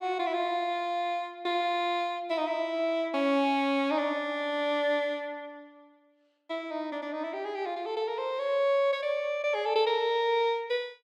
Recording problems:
none

